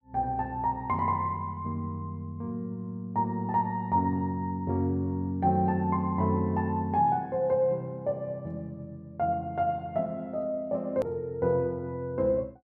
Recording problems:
edit click; at 11 s

